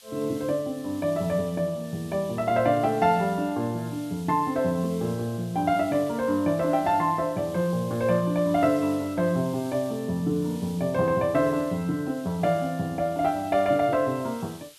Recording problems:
hiss; SNR 22 dB

